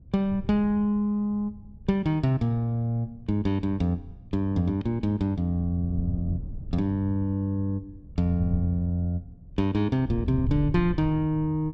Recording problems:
wind noise; below 120 Hz, SNR 12 dB

